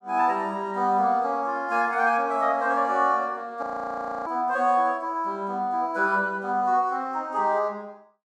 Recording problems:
frozen audio; at 3.5 s for 0.5 s

